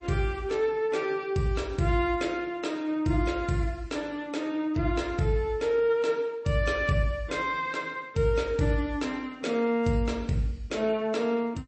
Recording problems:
codec artefacts; MP3, log-spectral distance 2 dB, nothing above 8.2 kHz

